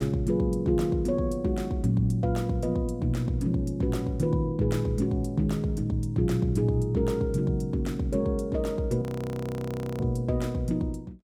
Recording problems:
audio freezing; at 9 s for 1 s

